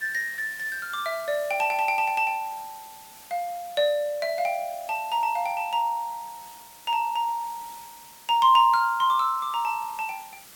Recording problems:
background hiss; slope 0 dB per octave, SNR 20 dB

